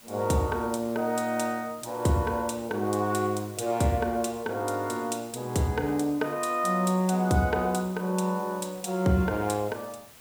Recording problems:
background hiss; slope -2 dB per octave, SNR 21 dB

